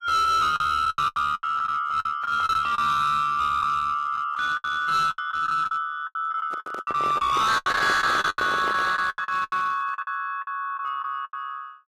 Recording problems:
lossy compression; AAC, log-spectral distance 2 dB, nothing above 13.7 kHz
distortion; hard clipping, uneven, signal-to-distortion ratio 10 dB
lost packets; 15% of the sound replaced, filled with the last packet
handling noise; from 6.5 to 9 s; peak -7 dB vs average level

